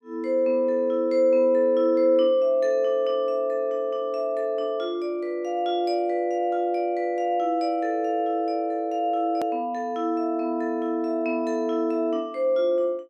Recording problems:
click at an edit; at 9.5 s

